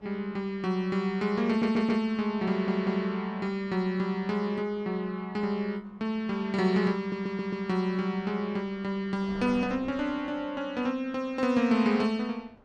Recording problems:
wind noise; below 800 Hz, SNR 25 dB
stutter; at 1.5 s, at 2.5 s and at 7 s

